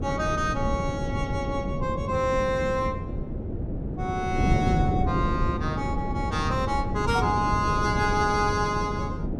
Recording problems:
wind on the microphone; below 260 Hz, SNR 2 dB

